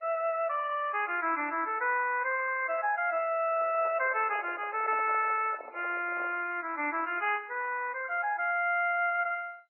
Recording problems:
lossy codec; MP3, then MP2, log-spectral distance 3 dB
handling noise; from 3.5 to 6.5 s; peak -9 dB vs average level

